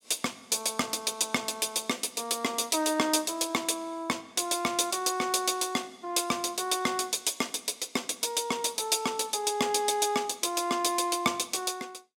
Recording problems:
none

